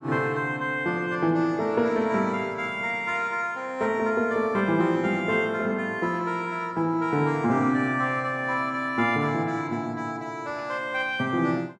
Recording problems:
none

